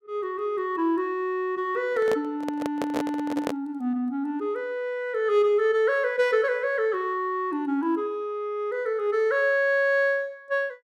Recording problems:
handling noise; from 2 to 3.5 s; peak -1 dB vs average level

